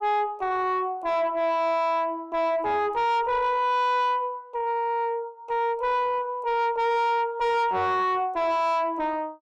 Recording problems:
distorted audio; soft clipping, signal-to-distortion ratio 5 dB

